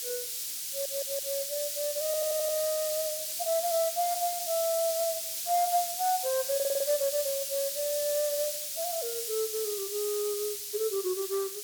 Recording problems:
hiss; SNR 1 dB
stutter; at 0.5 s, at 2 s and at 6.5 s

